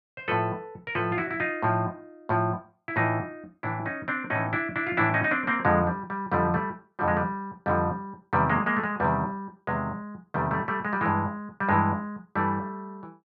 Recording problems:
none

